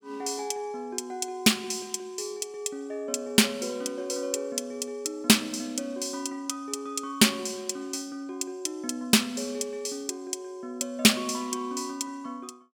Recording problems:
none

